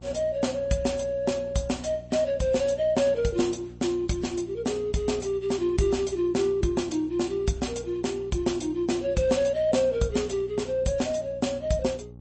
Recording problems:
lossy compression; MP3, log-spectral distance 3 dB, nothing above 8.2 kHz
hum; 60 Hz, harmonics up to 600 Hz, SNR 19 dB

